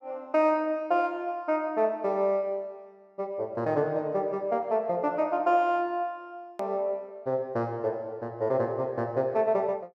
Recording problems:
edit click; at 6.5 s

